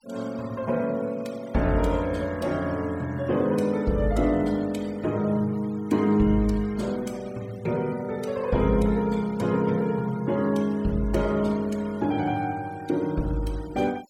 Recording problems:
denoising artefacts; signal-to-artefact ratio 23 dB

